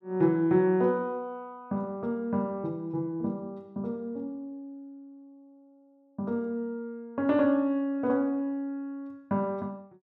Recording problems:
none

